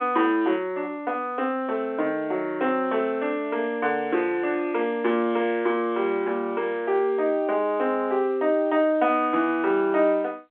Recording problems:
telephone audio; 280 Hz to 3.8 kHz, G.711

